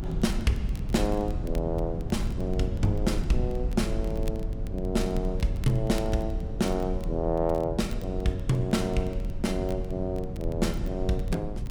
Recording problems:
low-frequency rumble; below 100 Hz, strongest tone 36 Hz, SNR 4 dB
crackle; vinyl, SNR 24 dB

